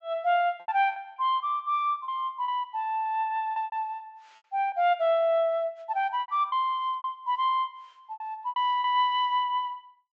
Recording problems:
treble missing; nothing above 8 kHz
packet loss; 10% of the sound replaced, filled with repeated pitch periods

